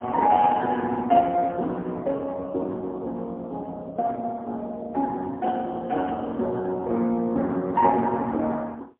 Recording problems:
telephone audio; 240 Hz to 3 kHz, AMR-NB, then MP3

